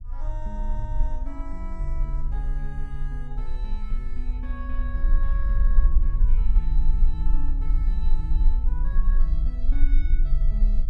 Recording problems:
rumble; below 40 Hz, strongest tone 20 Hz, SNR -13 dB

